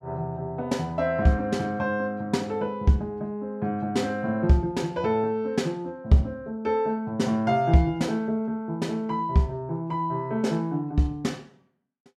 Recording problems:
none

